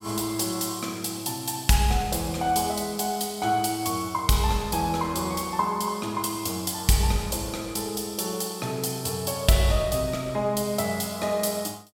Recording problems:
none

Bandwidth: 16.5 kHz